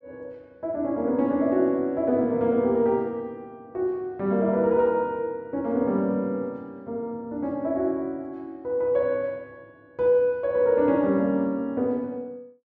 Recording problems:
none

